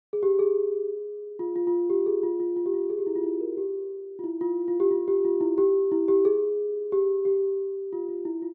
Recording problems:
none

